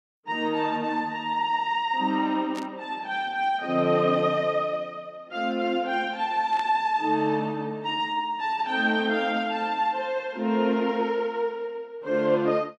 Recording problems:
static burst; at 2.5 s and at 6.5 s; peak -10 dB vs average level

